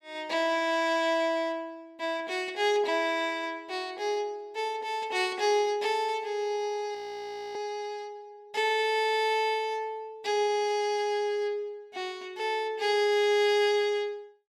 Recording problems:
audio freezing; at 7 s for 0.5 s

